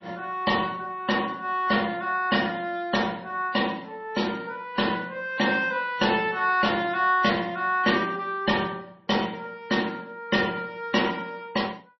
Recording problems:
lossy codec; MP3, log-spectral distance 3 dB, nothing above 5.7 kHz

